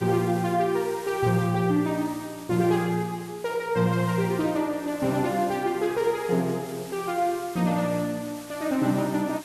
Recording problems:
hiss; slope -1 dB per octave, SNR 18 dB

